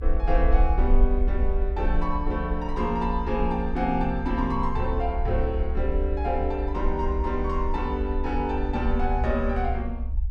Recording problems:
low-frequency rumble; below 64 Hz, SNR 1 dB

